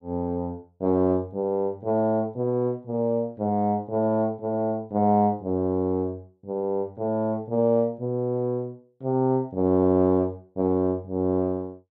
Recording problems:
none

